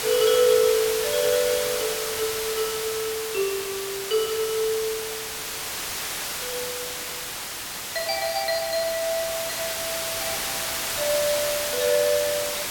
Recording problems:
hiss; slope 0 dB per octave, SNR 2 dB

